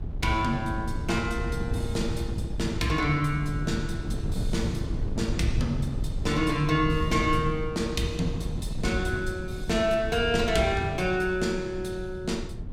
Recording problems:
wind on the microphone; below 140 Hz, SNR 5 dB

